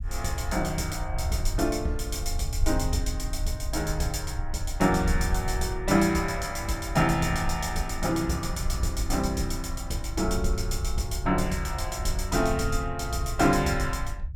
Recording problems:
rumble; below 72 Hz, SNR 5 dB

